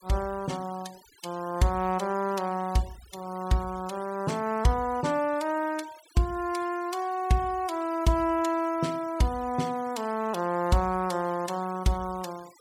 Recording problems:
noise reduction artefacts; signal-to-artefact ratio 21 dB

